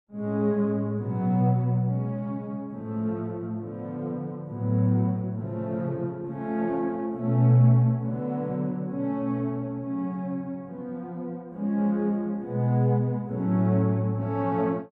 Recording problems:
none

